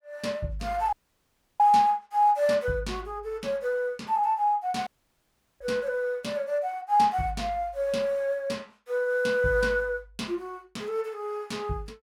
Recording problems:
dropout; at 1 s for 0.5 s and at 5 s for 0.5 s

